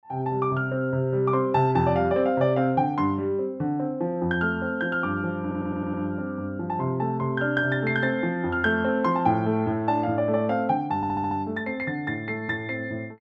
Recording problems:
stutter; at 5.5 s and at 11 s

